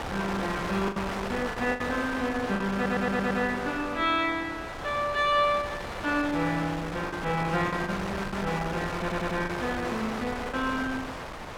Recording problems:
wind noise; below 1.9 kHz, SNR 6 dB
packet loss; 5% of the sound replaced, filled with the last packet
audio stuttering; at 2.5 s and at 9 s

